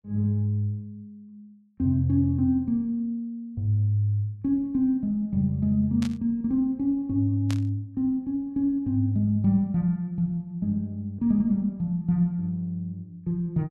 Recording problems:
static burst; at 6 s and at 7.5 s; peak -7 dB vs average level

